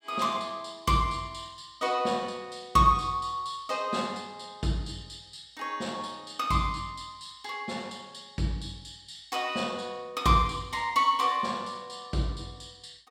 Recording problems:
none

